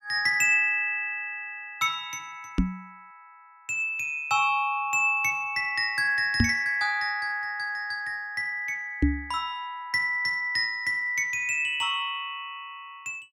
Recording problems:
microphone bump; at 2.5 s, at 6.5 s and at 9 s; peak +7 dB vs average level

